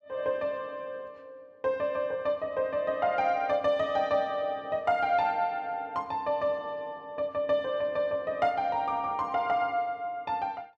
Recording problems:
none

